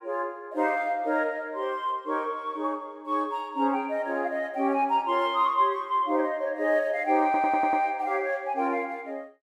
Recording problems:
audio stuttering; at 7.5 s

